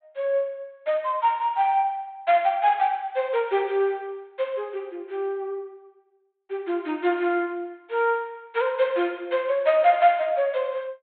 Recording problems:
treble missing; nothing above 4 kHz

